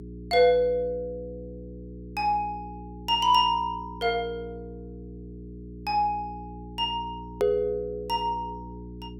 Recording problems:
hum; 60 Hz, harmonics up to 420 Hz, SNR 15 dB
edit click; at 7.5 s

